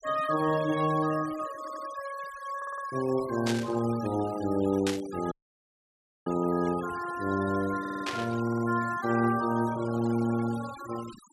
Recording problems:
noise reduction artefacts; signal-to-artefact ratio 16 dB
audio stuttering; 4 times, first at 1.5 s
burst of static; at 3.5 s, at 5 s and at 8 s; peak 0 dB vs average level
audio cutting out; at 5.5 s for 1 s

